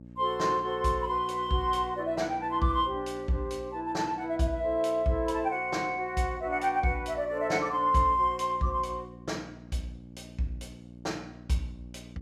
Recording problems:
hum; 60 Hz, harmonics up to 660 Hz, SNR 19 dB

